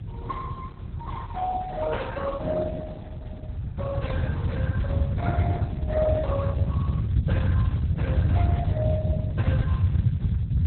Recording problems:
lossy compression; Speex, then Opus, log-spectral distance 2 dB, nothing above 3.9 kHz
rumble; below 140 Hz, SNR -5 dB

